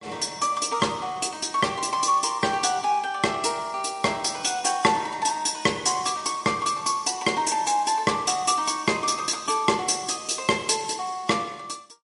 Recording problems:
codec artefacts; MP3, log-spectral distance 6 dB, nothing above 10.7 kHz

